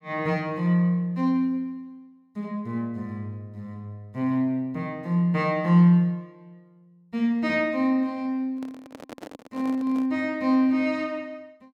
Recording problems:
handling noise; from 8.5 to 10 s; peak -11 dB vs average level

